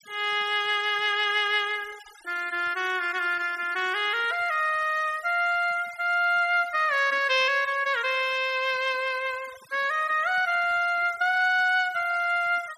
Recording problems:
noise reduction artefacts; signal-to-artefact ratio 22 dB

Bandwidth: 14 kHz